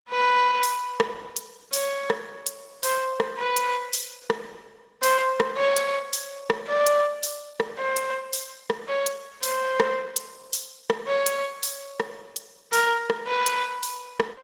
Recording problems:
lossy compression; Opus, log-spectral distance 5 dB, nothing above 17 kHz

